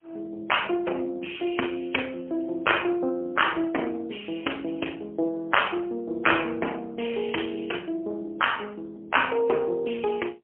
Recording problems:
telephone audio; 260 Hz to 3.1 kHz, AMR-NB, then MP3

